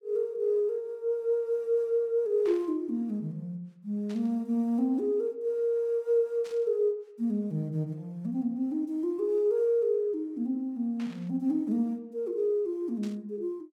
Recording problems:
static burst; 5 times, first at 2.5 s; peak -14 dB vs average level

